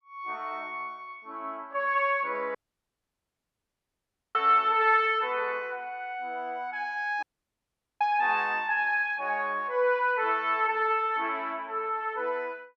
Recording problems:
audio cutting out; at 2.5 s for 2 s and at 7 s for 1 s

